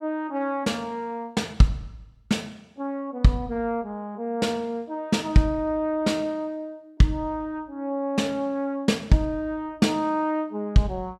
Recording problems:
none

